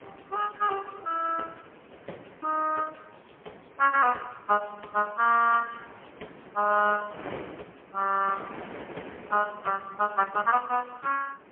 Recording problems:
phone line; 300 Hz to 2.6 kHz, AMR-NB, then MP3
wind noise; below 1.4 kHz, SNR 20 dB

